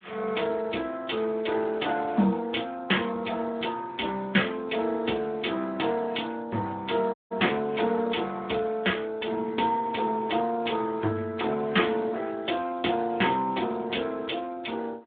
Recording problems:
telephone audio; 240 Hz to 3.5 kHz, Speex
audio cutting out; at 7 s

